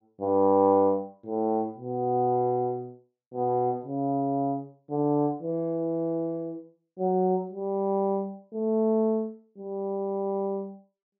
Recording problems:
treble missing; nothing above 7.2 kHz

